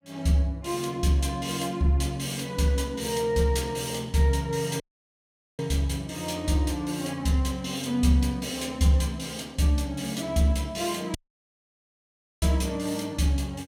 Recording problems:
audio cutting out; at 5 s for 1 s and at 11 s for 1.5 s

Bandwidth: 17 kHz